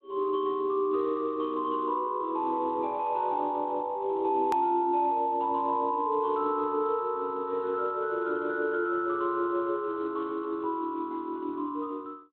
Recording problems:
phone line; 260 Hz to 3.9 kHz, Speex
hard cut with a click; at 4.5 s

